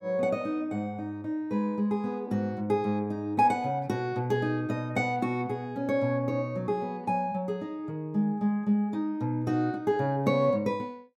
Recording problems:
none

